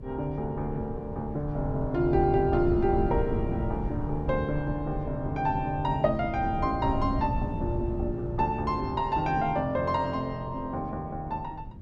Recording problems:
wind noise; below 140 Hz, SNR 7 dB

